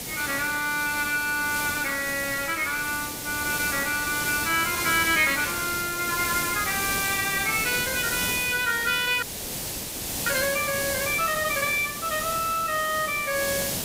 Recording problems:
hiss; SNR 4 dB
audio freezing; at 9 s for 1 s

